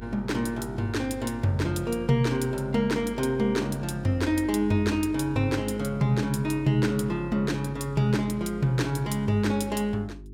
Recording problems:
electrical hum; 50 Hz, harmonics up to 400 Hz, SNR 17 dB

